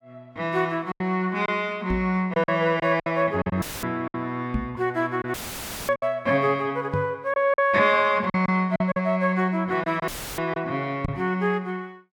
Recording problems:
packet loss; 7% of the sound replaced, filled with silence
microphone thump; 4 times, first at 2 s; peak +1 dB vs average level
audio cutting out; at 3.5 s, at 5.5 s for 0.5 s and at 10 s; filled with static

